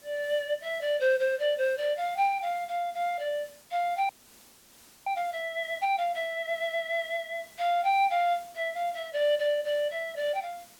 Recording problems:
background hiss; slope -1 dB per octave, SNR 24 dB
frozen audio; at 4 s for 1 s

